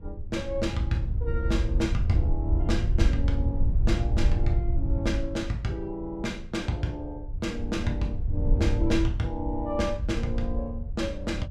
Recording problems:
wind on the microphone; below 82 Hz, SNR -2 dB

